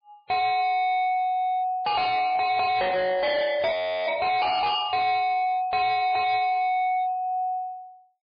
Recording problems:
lossy compression; MP3, log-spectral distance 2 dB, nothing above 4.5 kHz
distortion; hard clipping, signal-to-distortion ratio 6 dB
frozen audio; at 3.5 s

